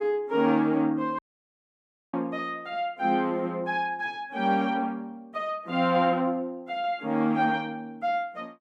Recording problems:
dropout; at 1 s for 1 s

